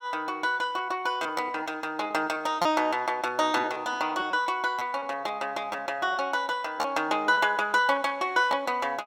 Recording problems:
lost packets; 12% of the sound replaced, filled with repeated pitch periods

